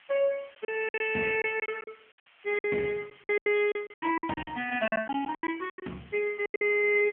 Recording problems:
telephone audio; 190 Hz to 3.2 kHz, AMR-NB
hiss; SNR 27 dB
lost packets; 17% of the sound replaced, filled with silence

